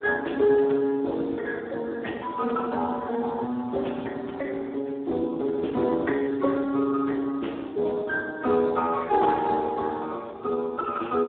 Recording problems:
phone line; 220 Hz to 2 kHz, Speex

